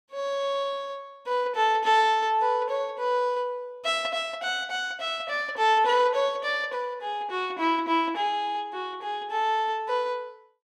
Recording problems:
none

